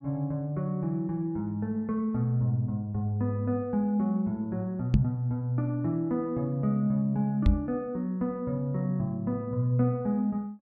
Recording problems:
microphone bump; at 5 s and at 7.5 s; peak +10 dB vs average level

